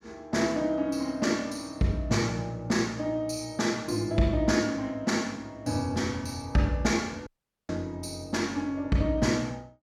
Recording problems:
audio cutting out; at 7.5 s

